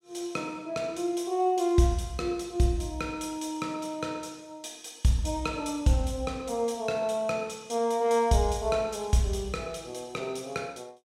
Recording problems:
none

